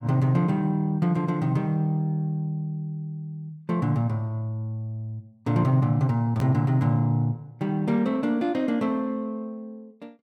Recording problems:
hard cut with a click; at 6.5 s

